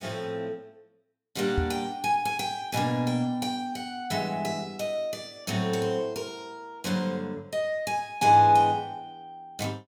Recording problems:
microphone thump; at 1.5 s; peak +2 dB vs average level

